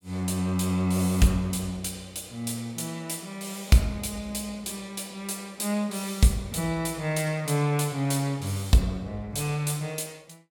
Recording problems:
none

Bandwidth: 17 kHz